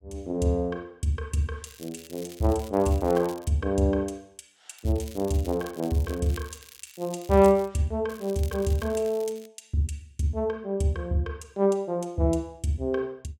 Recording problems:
crackling; from 1.5 to 3.5 s, from 5 to 7.5 s and from 8 to 9.5 s; loose cable, SNR 20 dB

